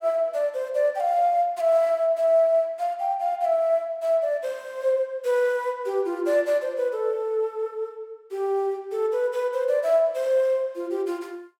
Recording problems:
none

